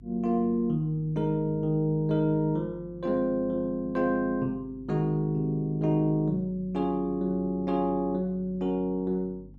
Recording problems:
mains hum; 50 Hz, harmonics up to 300 Hz, SNR 21 dB

